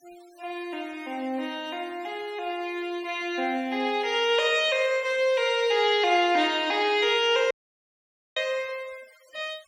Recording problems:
denoising artefacts; signal-to-artefact ratio 25 dB
dropout; at 7.5 s for 1 s

